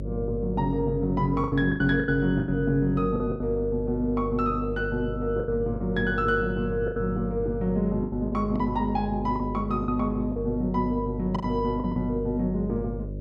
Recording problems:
mains hum; 50 Hz, harmonics up to 600 Hz, SNR 8 dB
lost packets; 8% of the sound replaced, filled with the last packet

